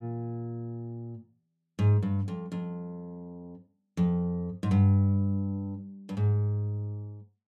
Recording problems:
none

